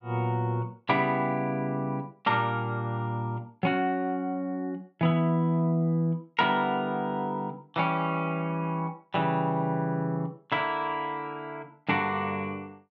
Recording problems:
none

